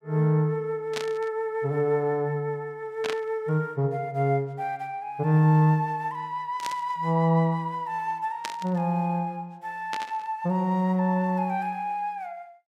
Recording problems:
burst of static; 5 times, first at 1 s; peak -1 dB vs average level

